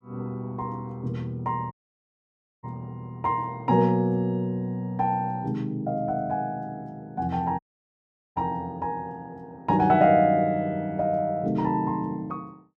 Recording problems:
dropout; at 1.5 s for 1 s and at 7.5 s for 1 s

